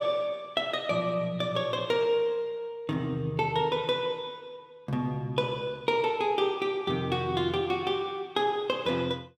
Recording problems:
none

